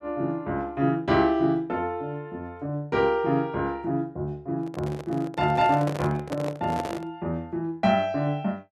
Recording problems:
handling noise; from 4.5 to 7 s; peak -2 dB vs average level

